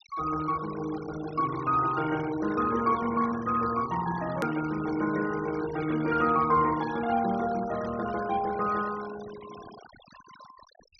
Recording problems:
low-pass filter; nothing above 6.1 kHz
noise reduction artefacts; signal-to-artefact ratio 16 dB
click at an edit; at 4.5 s

